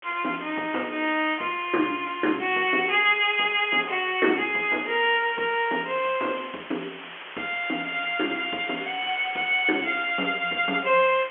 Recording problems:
phone line; 260 Hz to 3.3 kHz, G.711
background hiss; SNR 15 dB

